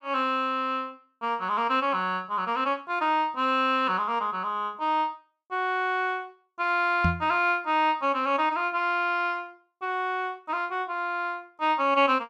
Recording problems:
microphone bump; at 7 s; peak +4 dB vs average level

